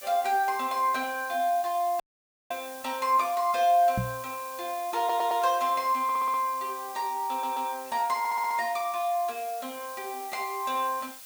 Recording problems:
background hiss; slope +2 dB per octave, SNR 15 dB
audio cutting out; at 2 s for 0.5 s
microphone bump; at 4 s; peak +1 dB vs average level
audio stuttering; 4 times, first at 5 s

